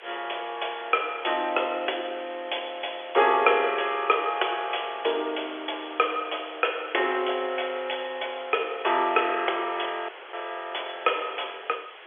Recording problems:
telephone audio; 320 Hz to 3.4 kHz, G.711
hiss; SNR 17 dB
dropout; at 10 s

